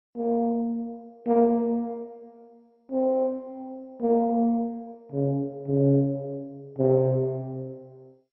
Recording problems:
lossy codec; MP2, log-spectral distance 2 dB

